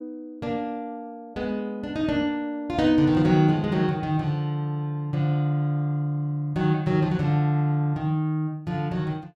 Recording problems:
none

